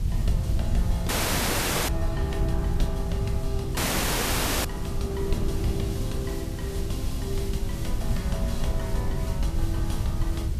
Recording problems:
background hiss; slope 0 dB per octave, SNR 11 dB
low-frequency rumble; below 92 Hz, SNR -3 dB
wind noise; below 130 Hz, SNR 2 dB
audio cutting out; at 1 s for 1 s and at 4 s for 1 s

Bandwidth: 14.5 kHz